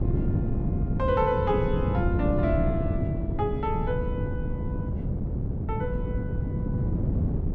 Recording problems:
wind on the microphone; below 200 Hz, SNR -1 dB

